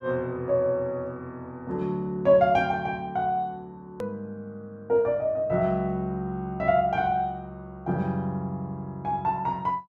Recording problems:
click at an edit; at 4 s

